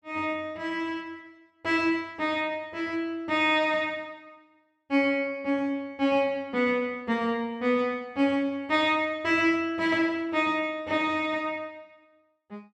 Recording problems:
none

